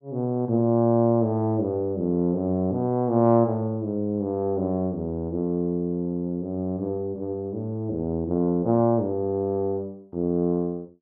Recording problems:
none

